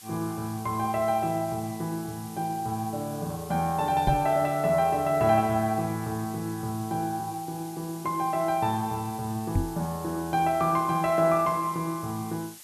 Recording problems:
background hiss; slope +2 dB per octave, SNR 17 dB
microphone thump; at 4 s and at 9.5 s; peak +5 dB vs average level

